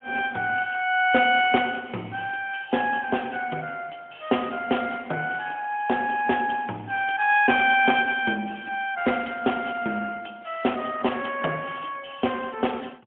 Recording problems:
phone line; 190 Hz to 3.3 kHz, AMR-NB, then MP3

